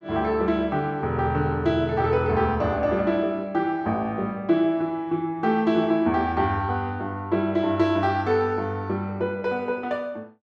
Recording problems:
none

